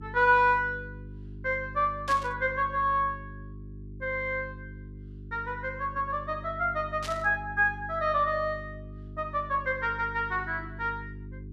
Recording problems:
hum; 50 Hz, harmonics up to 400 Hz, SNR 15 dB
static burst; at 2 s and at 7 s; peak -5 dB vs average level

